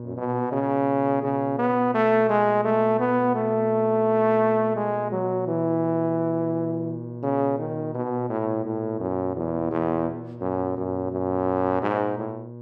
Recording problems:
hum; 60 Hz, harmonics up to 960 Hz, SNR 13 dB

